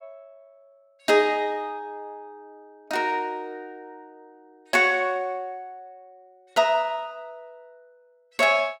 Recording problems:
none

